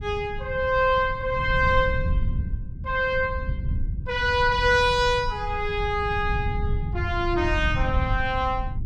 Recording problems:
rumble; below 100 Hz, SNR 7 dB

